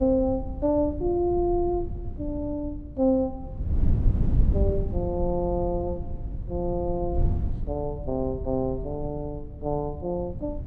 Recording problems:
wind noise; below 110 Hz, SNR 4 dB

